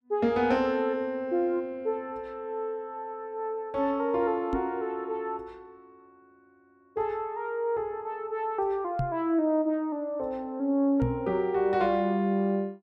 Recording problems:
microphone bump; at 4.5 s, at 9 s and at 11 s; peak +3 dB vs average level

